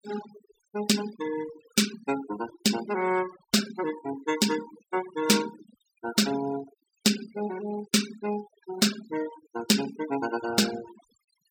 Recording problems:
noise reduction artefacts; signal-to-artefact ratio 12 dB

